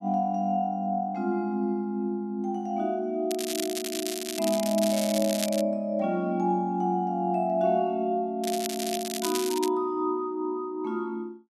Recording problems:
crackling; from 3.5 to 5.5 s and from 8.5 to 9.5 s; loose cable, SNR 6 dB

